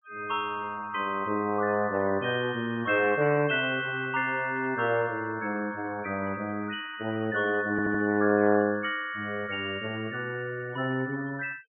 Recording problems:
low-pass filter; nothing above 3.2 kHz
denoising artefacts; signal-to-artefact ratio 20 dB
stutter; at 7.5 s

